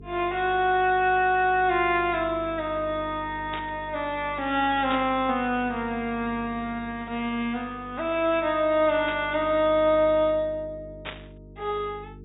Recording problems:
treble missing; nothing above 4 kHz
electrical hum; 50 Hz, harmonics up to 450 Hz, SNR 19 dB
static burst; 4 times, first at 3.5 s; peak -5 dB vs average level

